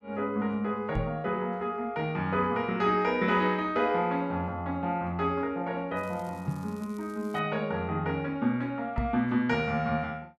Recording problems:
microphone bump; at 1 s, at 6.5 s and at 9 s; peak +2 dB vs average level
crackling; from 6 to 7.5 s; loose cable, SNR 28 dB

